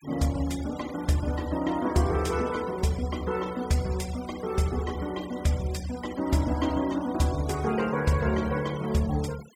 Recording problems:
denoising artefacts; signal-to-artefact ratio 18 dB

